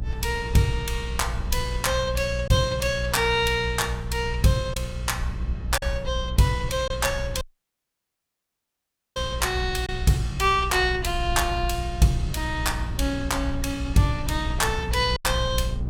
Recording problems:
electrical hum; 60 Hz, harmonics up to 600 Hz, SNR 10 dB
low-frequency rumble; below 70 Hz, strongest tone 56 Hz, SNR 8 dB
lost packets; 1.5% of the sound replaced, filled with silence
dropout; at 7.5 s for 2 s

